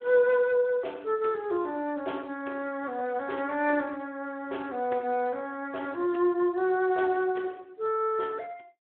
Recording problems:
telephone audio; 300 Hz to 3.4 kHz, Speex

